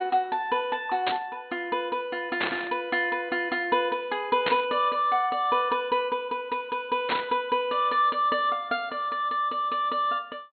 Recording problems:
treble missing; nothing above 4.2 kHz
burst of static; 4 times, first at 1 s; peak +3 dB vs average level

